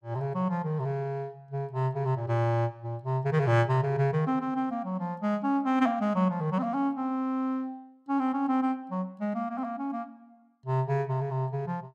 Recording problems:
none

